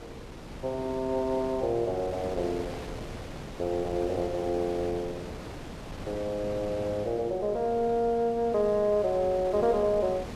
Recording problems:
wind on the microphone; below 810 Hz, SNR 12 dB

